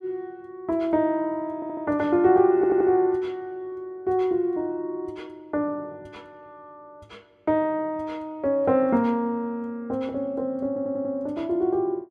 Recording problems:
audio stuttering; at 1.5 s, at 2.5 s and at 11 s

